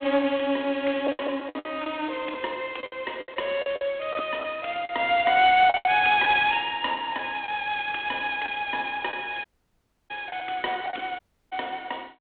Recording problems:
phone line; 220 Hz to 3.7 kHz, G.726
lost packets; 8% of the sound replaced, filled with the last packet
dropout; at 9.5 s for 0.5 s and at 11 s

